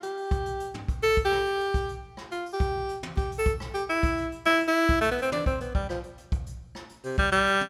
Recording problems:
none

